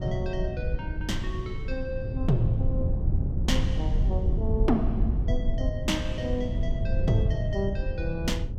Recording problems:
electrical hum; 50 Hz, harmonics up to 600 Hz, SNR 24 dB
low-frequency rumble; below 98 Hz, SNR -2 dB

